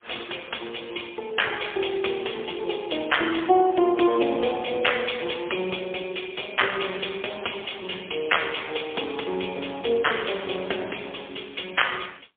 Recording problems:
telephone audio; 300 Hz to 3.5 kHz, AMR-NB, then MP3

